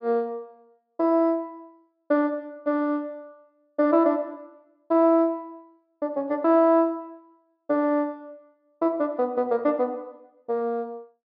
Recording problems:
low-pass filter; nothing above 5.1 kHz

